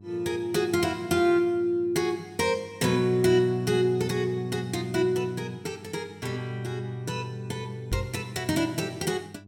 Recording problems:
hum; 50 Hz, harmonics up to 400 Hz, SNR 22 dB
microphone thump; at 8 s; peak +1 dB vs average level

